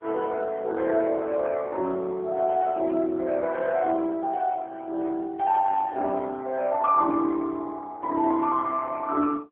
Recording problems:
phone line; 260 Hz to 2.1 kHz, AMR-NB

